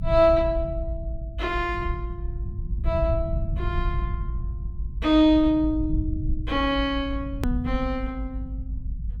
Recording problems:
low-frequency rumble; below 84 Hz, SNR 6 dB
hard cut with a click; at 7.5 s

